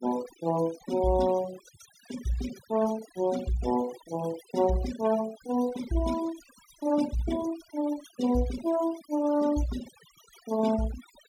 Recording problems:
denoising artefacts; signal-to-artefact ratio 15 dB

